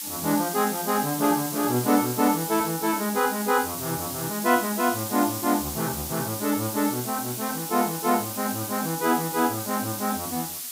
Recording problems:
hiss; slope +5 dB per octave, SNR 5 dB

